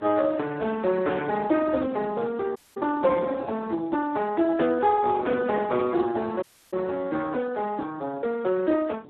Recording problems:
telephone audio; 220 Hz to 2.1 kHz, Speex
wind noise; below 490 Hz, SNR 16 dB
dropout; at 2.5 s and at 6.5 s

